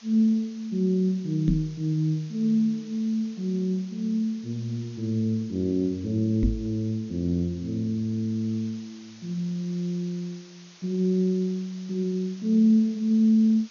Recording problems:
treble cut off; nothing above 6.7 kHz
background hiss; slope +1 dB per octave, SNR 25 dB
microphone thump; at 1.5 s and at 6.5 s; peak +5 dB vs average level

